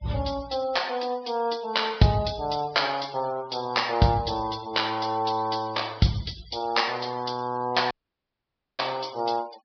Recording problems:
low-pass filter; nothing above 5.5 kHz
denoising artefacts; signal-to-artefact ratio 20 dB
audio cutting out; at 8 s for 1 s

